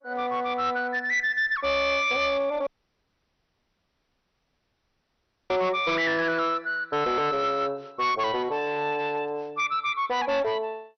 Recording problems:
lossy compression; MP2, log-spectral distance 2 dB, nothing above 6 kHz
distorted audio; hard clipping, uneven, signal-to-distortion ratio 11 dB
dropout; at 2.5 s for 3 s

